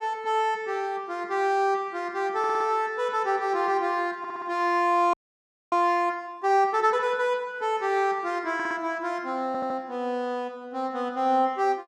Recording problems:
audio stuttering; 4 times, first at 2.5 s
audio freezing; at 5 s for 0.5 s

